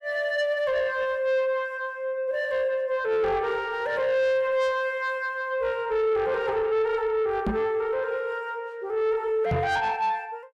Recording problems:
distorted audio; soft clipping, signal-to-distortion ratio 11 dB
microphone thump; at 7.5 s and at 9.5 s; peak +3 dB vs average level

